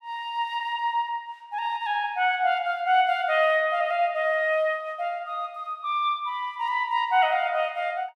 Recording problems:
none

